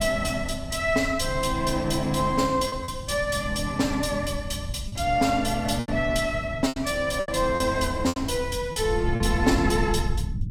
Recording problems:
rumble; below 110 Hz, SNR 9 dB
packet loss; 5% of the sound replaced, filled with repeated pitch periods

